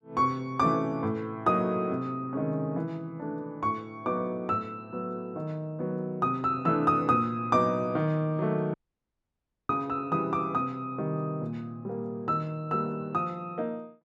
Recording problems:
dropout; at 8.5 s for 1 s

